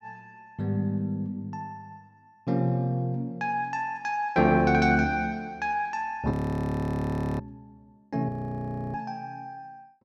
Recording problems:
frozen audio; at 6.5 s for 1 s and at 8.5 s for 0.5 s

